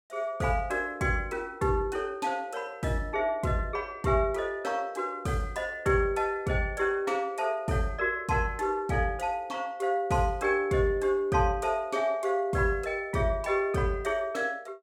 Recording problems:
none

